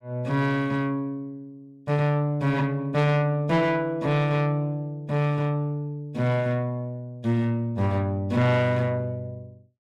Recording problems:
distorted audio; soft clipping, signal-to-distortion ratio 11 dB

